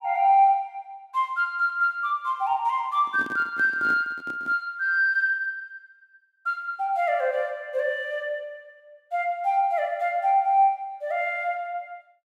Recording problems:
microphone handling noise; from 3 to 4.5 s; peak -10 dB vs average level

